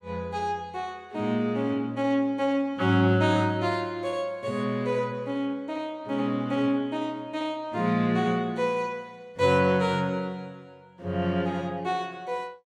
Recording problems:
none

